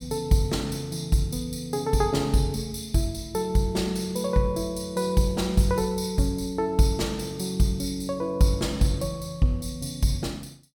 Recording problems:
none

